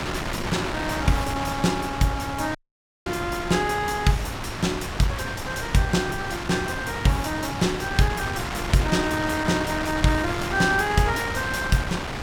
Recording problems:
wind on the microphone; below 2.1 kHz, SNR 5 dB
dropout; at 2.5 s for 0.5 s

